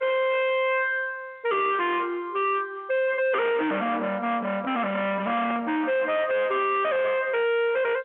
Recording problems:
phone line; 260 Hz to 3.7 kHz, G.711
distortion; hard clipping, uneven, signal-to-distortion ratio 4 dB
microphone handling noise; from 3 to 7 s; peak -4 dB vs average level

